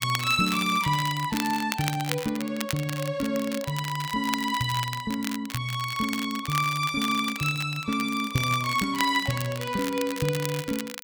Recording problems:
crackling; vinyl, SNR 9 dB

